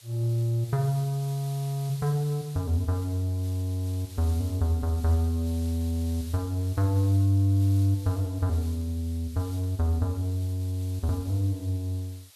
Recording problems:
hiss; slope +3 dB per octave, SNR 20 dB

